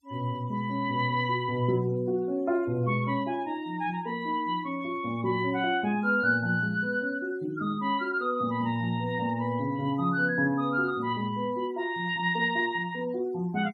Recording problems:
noise reduction artefacts; signal-to-artefact ratio 27 dB

